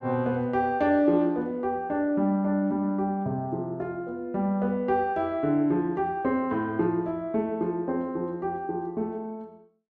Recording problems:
none

